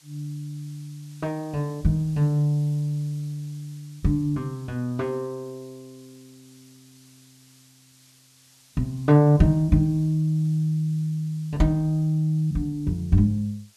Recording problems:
hiss; slope +2 dB per octave, SNR 29 dB

